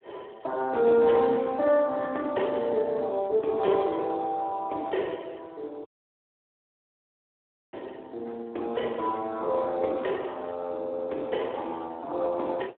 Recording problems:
telephone audio; 280 Hz to 3.1 kHz, Speex
dropout; at 6 s for 2 s

